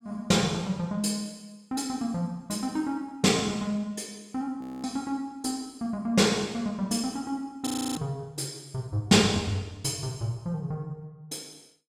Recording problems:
audio freezing; at 4.5 s and at 7.5 s

